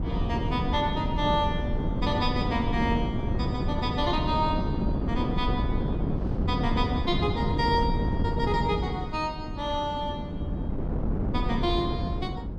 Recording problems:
wind on the microphone; below 250 Hz, SNR 0 dB

